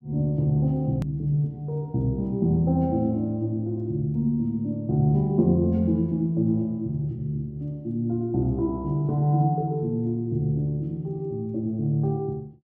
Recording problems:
edit click; at 1 s

